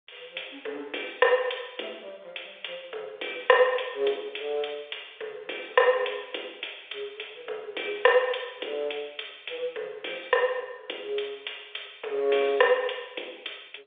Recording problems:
phone line; 340 Hz to 3.7 kHz, G.711

